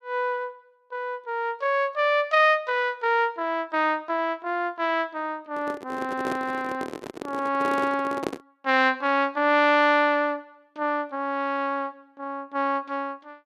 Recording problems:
microphone handling noise; from 5.5 to 8.5 s; peak 0 dB vs average level

